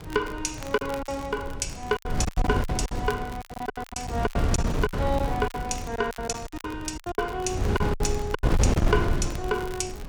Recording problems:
wind on the microphone; below 240 Hz, SNR -1 dB
crackling; vinyl, SNR 17 dB
lost packets; 15% of the sound replaced, filled with silence

